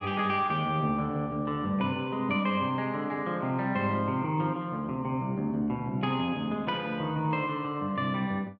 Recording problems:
none

